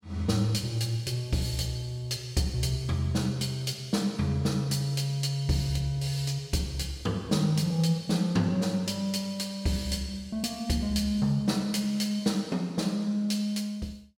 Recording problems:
none

